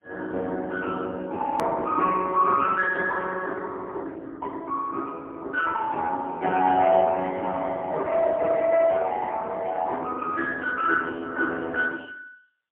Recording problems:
phone line; 280 Hz to 3 kHz, AMR-NB, then MP3
edit click; at 1.5 s

